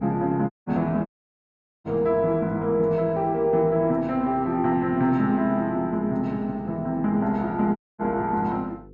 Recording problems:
hum; 50 Hz, harmonics up to 500 Hz, SNR 24 dB
audio cutting out; at 0.5 s, at 1 s for 1 s and at 8 s

